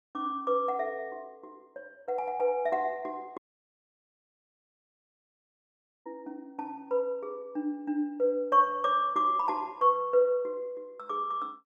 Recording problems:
dropout; at 3.5 s for 2.5 s

